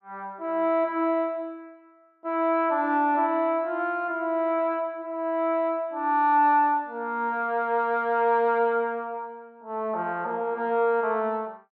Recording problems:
none

